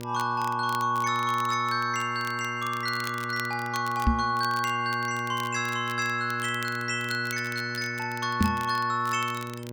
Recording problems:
mains hum; 60 Hz, harmonics up to 1.6 kHz, SNR 10 dB
crackle; vinyl, SNR 17 dB
microphone bump; at 4 s and at 8.5 s; peak +7 dB vs average level

